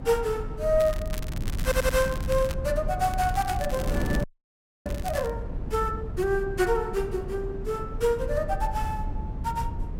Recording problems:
low-frequency rumble; below 88 Hz, strongest tone 34 Hz, SNR 7 dB
wind on the microphone; below 320 Hz, SNR 10 dB
crackling; from 1 to 2.5 s and from 3 to 5.5 s; loose cable, SNR 14 dB
stutter; at 1.5 s
frozen audio; at 4 s for 0.5 s

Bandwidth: 16 kHz